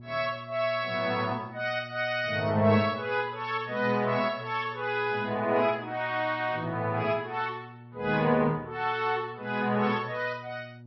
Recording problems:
lossy codec; Vorbis, then MP3, log-spectral distance 2 dB, nothing above 4.6 kHz
hum; 60 Hz, harmonics up to 600 Hz, SNR 19 dB

